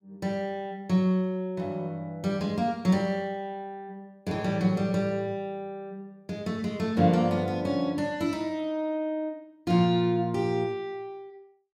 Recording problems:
none

